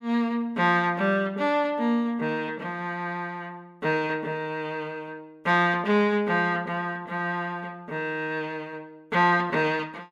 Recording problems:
none

